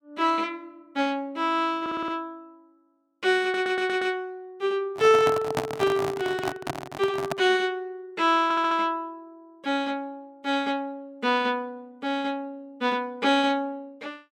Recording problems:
stutter; at 2 s, at 3.5 s and at 8.5 s
microphone handling noise; from 5 to 7.5 s; peak +3 dB vs average level

